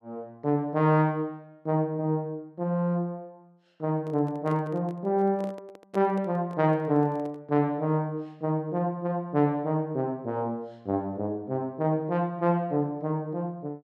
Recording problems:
handling noise; from 4 to 7.5 s; peak -7 dB vs average level

